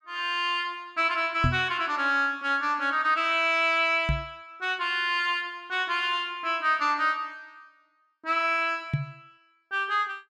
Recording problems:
microphone bump; at 1.5 s, at 4 s and at 9 s; peak +3 dB vs average level

